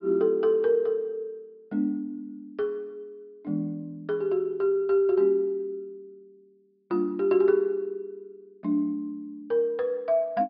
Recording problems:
treble missing; nothing above 5.2 kHz

